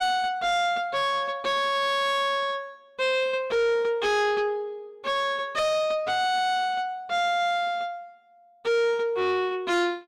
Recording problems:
distortion; soft clipping, signal-to-distortion ratio 10 dB

